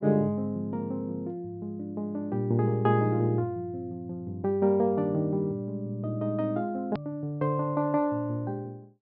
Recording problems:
treble missing; nothing above 5.5 kHz
click at an edit; at 7 s

